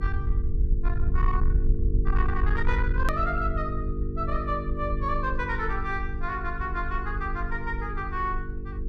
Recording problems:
distorted audio; soft clipping, signal-to-distortion ratio 10 dB
electrical hum; 50 Hz, harmonics up to 450 Hz, SNR 5 dB
low-frequency rumble; below 58 Hz, SNR 0 dB
click at an edit; at 3 s

